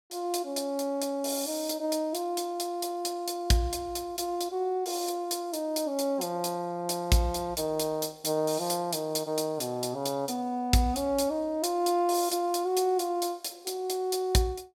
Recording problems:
none

